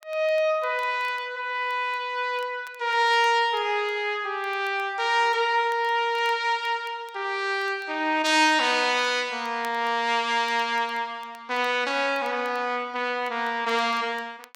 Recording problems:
crackling; vinyl, SNR 29 dB

